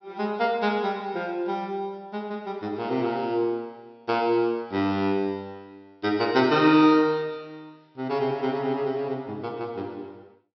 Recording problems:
low-pass filter; nothing above 5.8 kHz

